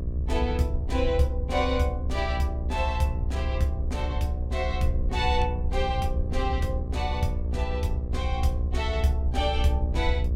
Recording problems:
electrical hum; 60 Hz, harmonics up to 720 Hz, SNR 9 dB
low-frequency rumble; below 70 Hz, strongest tone 68 Hz, SNR 0 dB

